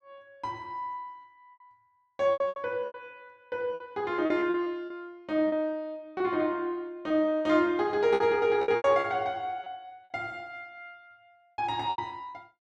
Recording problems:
lost packets; 9% of the sound replaced, filled with repeated pitch periods

